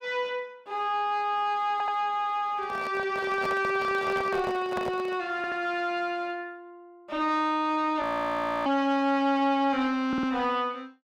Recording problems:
distorted audio; soft clipping, signal-to-distortion ratio 11 dB
audio stuttering; at 1.5 s, at 5.5 s and at 10 s
microphone handling noise; from 2.5 to 5 s; peak -2 dB vs average level
frozen audio; at 8 s for 0.5 s

